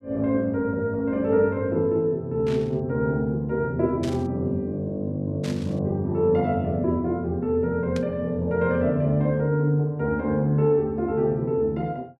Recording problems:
static burst; 4 times, first at 2.5 s; peak -10 dB vs average level

